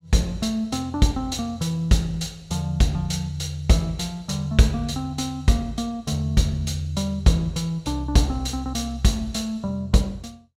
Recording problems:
none

